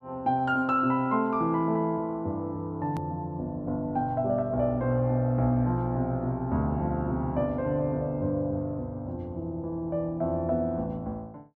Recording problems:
click at an edit; at 3 s

